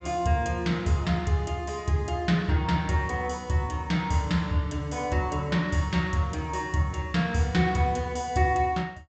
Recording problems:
treble missing; nothing above 8 kHz

